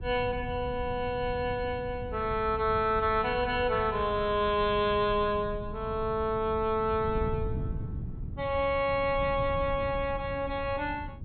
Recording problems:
treble missing; nothing above 4.3 kHz
wind on the microphone; below 140 Hz, SNR 10 dB

